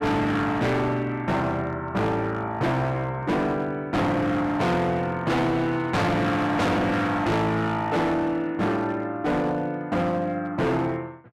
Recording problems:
distortion; hard clipping, signal-to-distortion ratio 6 dB

